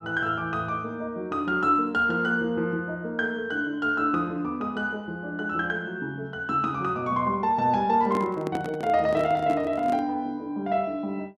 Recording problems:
microphone handling noise; from 8 to 10 s; peak -2 dB vs average level

